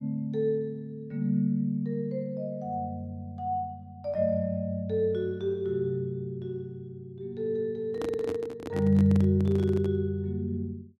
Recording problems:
microphone handling noise; from 8 to 10 s; peak -3 dB vs average level

